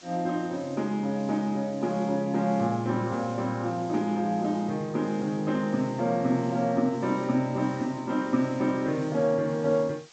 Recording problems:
treble missing; nothing above 8 kHz
background hiss; slope 0 dB per octave, SNR 23 dB

